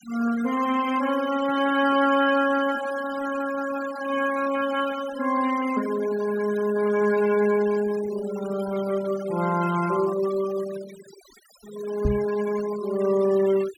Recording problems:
denoising artefacts; signal-to-artefact ratio 15 dB
microphone bump; at 12 s; peak +4 dB vs average level

